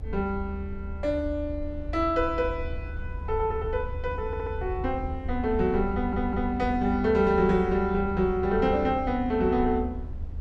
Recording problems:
rumble; below 76 Hz, SNR 9 dB
stutter; at 4.5 s and at 6 s

